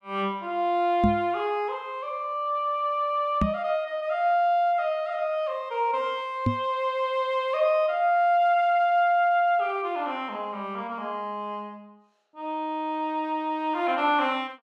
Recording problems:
knock on the microphone; at 1 s, at 3.5 s and at 6.5 s; peak +6 dB vs average level

